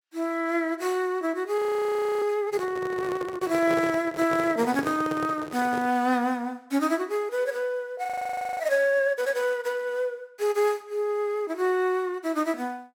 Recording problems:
frozen audio; at 1.5 s for 0.5 s and at 8 s for 0.5 s
handling noise; from 2.5 to 6 s; peak -2 dB vs average level

